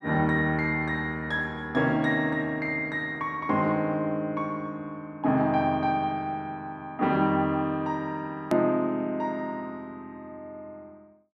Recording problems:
edit click; at 8.5 s

